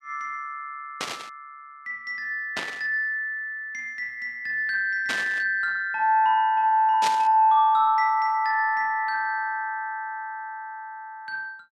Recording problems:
burst of static; 4 times, first at 1 s; peak 0 dB vs average level

